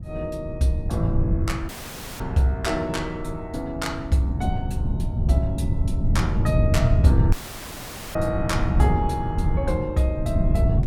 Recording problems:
wind noise; below 130 Hz, SNR -1 dB
dropout; at 1.5 s for 0.5 s and at 7.5 s for 1 s

